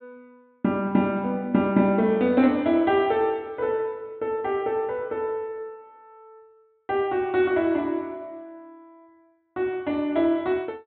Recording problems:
low-pass filter; nothing above 4 kHz

